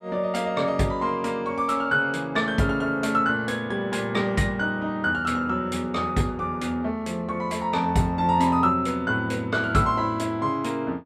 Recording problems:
none

